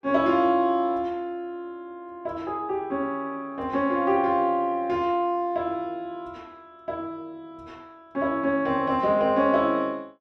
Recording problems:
none

